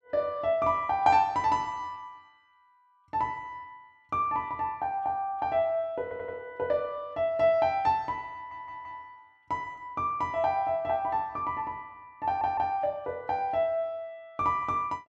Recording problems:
audio stuttering; at 6 s, at 8.5 s and at 12 s

